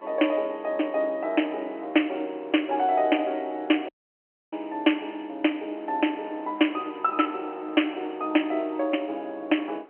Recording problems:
telephone audio; 240 Hz to 3.1 kHz, G.711
wind on the microphone; below 1 kHz, SNR 23 dB
dropout; at 4 s for 0.5 s

